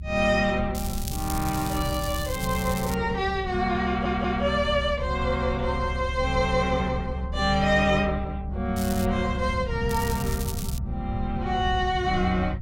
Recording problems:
low-frequency rumble; below 100 Hz, strongest tone 66 Hz, SNR 7 dB
crackling; from 1 to 3 s, at 9 s and at 10 s; loose cable, SNR 11 dB
audio stuttering; at 4 s

